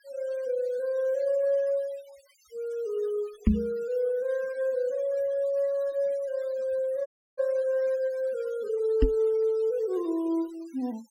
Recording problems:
denoising artefacts; signal-to-artefact ratio 26 dB
microphone bump; at 3.5 s and at 9 s; peak +10 dB vs average level
audio cutting out; at 7 s

